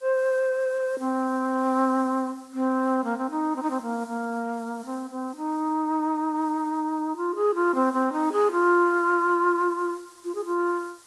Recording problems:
lossy compression; AAC, log-spectral distance 2 dB
hiss; SNR 27 dB

